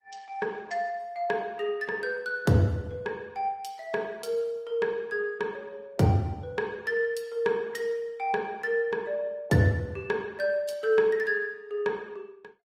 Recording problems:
lossy codec; Opus, then Opus, log-spectral distance 2 dB, nothing above 16.6 kHz

